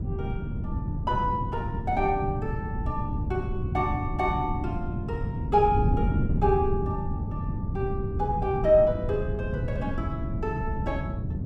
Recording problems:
wind on the microphone; below 170 Hz, SNR 2 dB

